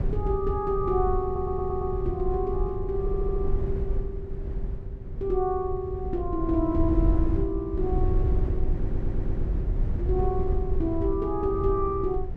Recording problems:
low-frequency rumble; below 84 Hz, SNR 2 dB
stutter; at 1.5 s, at 3 s and at 8.5 s

